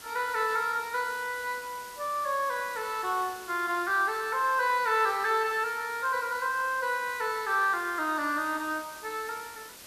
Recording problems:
hiss; slope -1 dB per octave, SNR 16 dB

